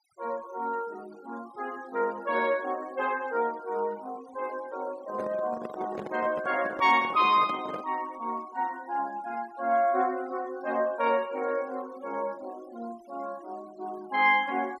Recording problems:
denoising artefacts; signal-to-artefact ratio 22 dB
microphone handling noise; from 5 to 8 s; peak -4 dB vs average level

